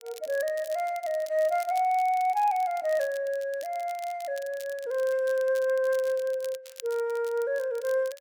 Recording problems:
crackling; vinyl, SNR 20 dB

